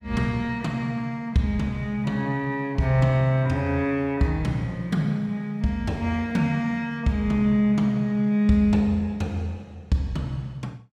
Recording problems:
none

